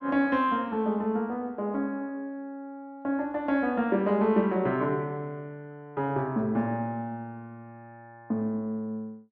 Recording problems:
none

